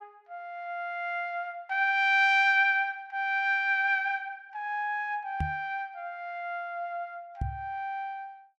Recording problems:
microphone bump; at 5.5 s and at 7.5 s; peak -1 dB vs average level

